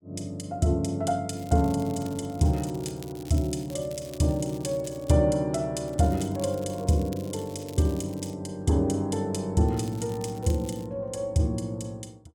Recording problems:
crackle; from 1.5 to 5 s, from 6 to 8.5 s and from 9.5 to 11 s; loose cable, SNR 21 dB

